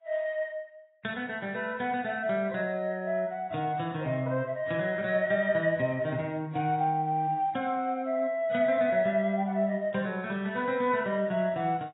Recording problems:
lossy compression; AAC, log-spectral distance 2 dB, nothing above 3.8 kHz

